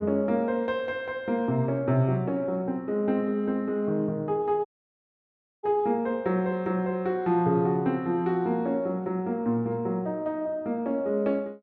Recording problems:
audio cutting out; at 4.5 s for 1 s

